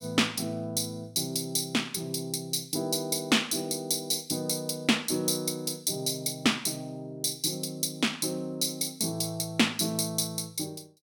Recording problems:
none

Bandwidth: 17.5 kHz